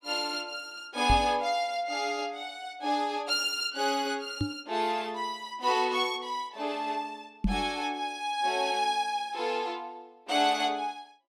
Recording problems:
microphone thump; at 1 s, at 4.5 s and at 7.5 s; peak +6 dB vs average level

